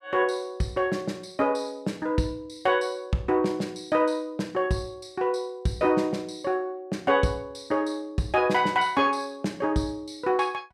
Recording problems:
none

